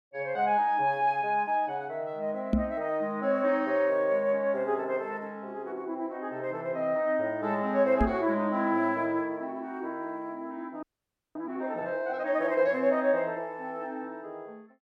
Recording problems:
knock on the microphone; at 2.5 s and at 8 s; peak +6 dB vs average level
frozen audio; at 11 s for 0.5 s

